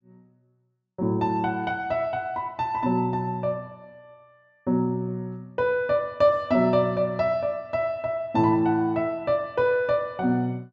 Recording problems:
treble cut off; nothing above 8 kHz

